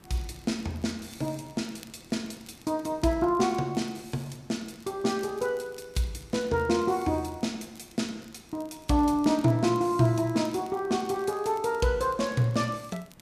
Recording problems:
background hiss; slope -6 dB per octave, SNR 28 dB
crackle; vinyl, SNR 27 dB

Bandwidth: 14.5 kHz